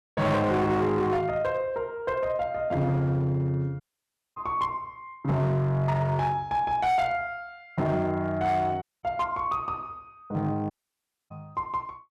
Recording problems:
distortion; hard clipping, signal-to-distortion ratio 11 dB
dropout; at 4 s for 0.5 s, at 9 s and at 11 s for 0.5 s

